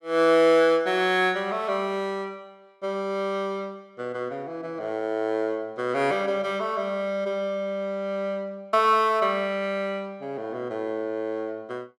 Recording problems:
none

